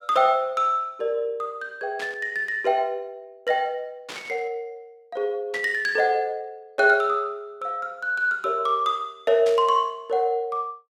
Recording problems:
static burst; 4 times, first at 2 s; peak -8 dB vs average level

